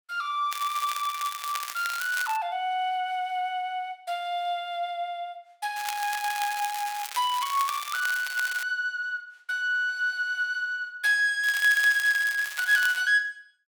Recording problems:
crackling; from 0.5 to 2.5 s, from 6 to 8.5 s and from 11 to 13 s; loose cable, SNR 10 dB

